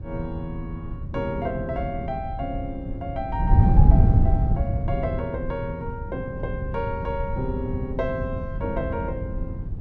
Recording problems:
wind noise; below 120 Hz, SNR -4 dB

